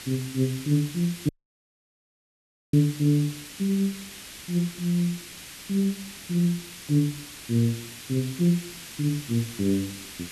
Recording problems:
hiss; SNR 13 dB
dropout; at 1.5 s for 1.5 s

